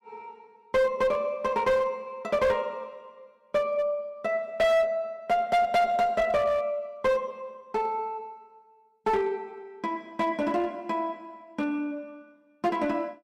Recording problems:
distortion; hard clipping, uneven, signal-to-distortion ratio 9 dB

